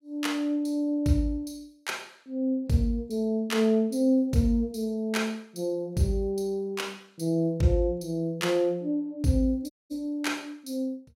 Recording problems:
audio cutting out; at 9.5 s

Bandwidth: 16.5 kHz